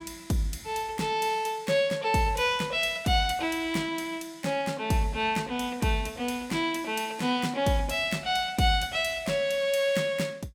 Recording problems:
none

